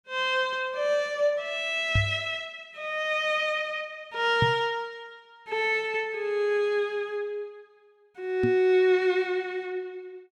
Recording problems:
microphone bump; at 2 s, at 4.5 s and at 8.5 s; peak +4 dB vs average level

